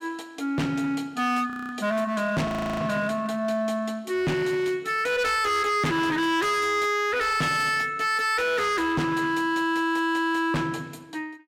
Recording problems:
distortion; hard clipping, signal-to-distortion ratio 7 dB
audio freezing; at 1.5 s and at 2.5 s

